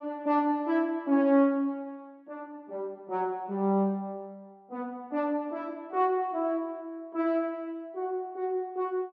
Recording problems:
none

